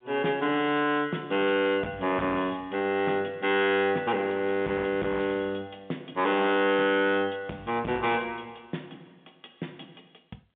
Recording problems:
phone line; 130 Hz to 3.7 kHz, G.711
distortion; hard clipping, signal-to-distortion ratio 10 dB

